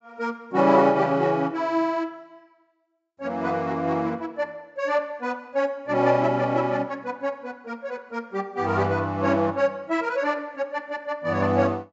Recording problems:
treble cut off; nothing above 8 kHz

